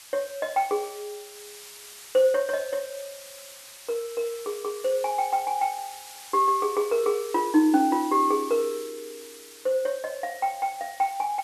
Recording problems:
background hiss; slope +3 dB per octave, SNR 16 dB

